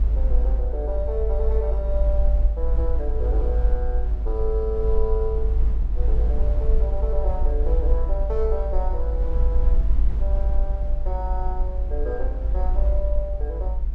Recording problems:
rumble; below 54 Hz, SNR -7 dB

